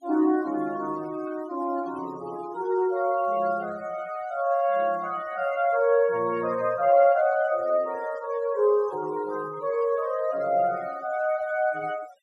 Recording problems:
noise reduction artefacts; signal-to-artefact ratio 21 dB

